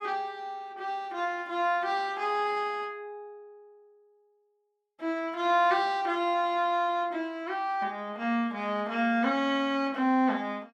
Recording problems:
none

